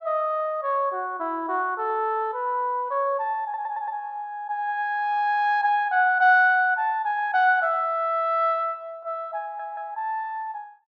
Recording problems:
audio stuttering; at 3.5 s and at 9.5 s

